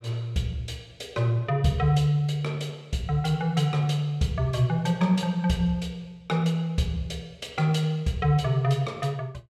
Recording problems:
none

